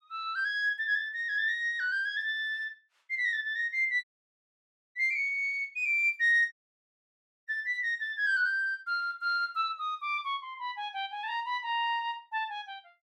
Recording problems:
dropout; at 4 s for 1 s and at 6.5 s for 1 s

